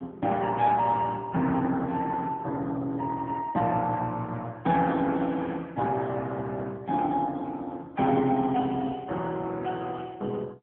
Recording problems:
telephone audio; 150 Hz to 3 kHz, AMR-NB

